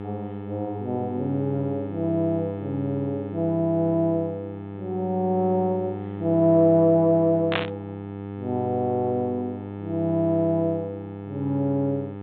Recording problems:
treble missing; nothing above 4 kHz
electrical hum; 50 Hz, harmonics up to 1.3 kHz, SNR 10 dB
static burst; at 7.5 s; peak +3 dB vs average level

